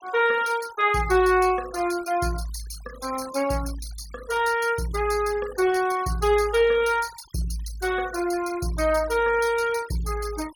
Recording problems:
denoising artefacts; signal-to-artefact ratio 19 dB

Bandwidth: 17.5 kHz